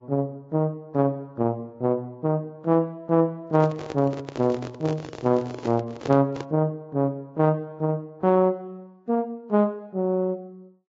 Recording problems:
lossy codec; Vorbis, log-spectral distance 2 dB
handling noise; from 3.5 to 6.5 s; peak -3 dB vs average level

